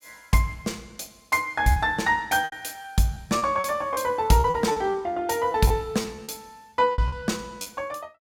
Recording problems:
lost packets; 10% of the sound replaced, filled with repeated pitch periods

